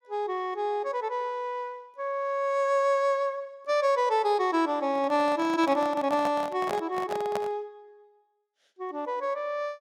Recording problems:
handling noise; from 5 to 7.5 s; peak -2 dB vs average level

